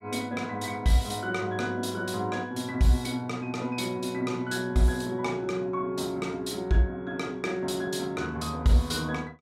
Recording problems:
none

